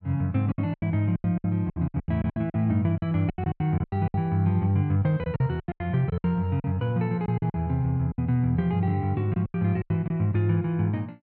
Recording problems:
packet loss; 15% of the sound replaced, filled with silence

